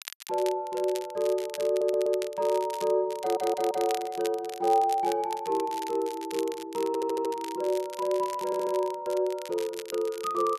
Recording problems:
crackling; vinyl, SNR 15 dB
audio stuttering; 4 times, first at 1.5 s

